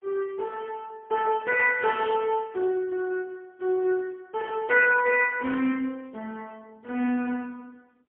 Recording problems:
telephone audio; 220 Hz to 3 kHz, AMR-NB, then MP3

